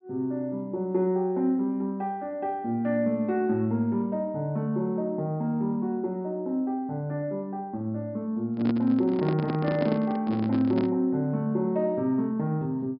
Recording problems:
low-pass filter; nothing above 5.5 kHz
handling noise; from 8.5 to 11 s; peak +1 dB vs average level

